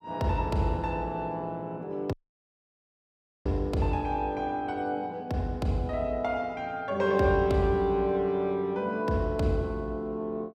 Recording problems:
dropout; at 2 s for 1.5 s

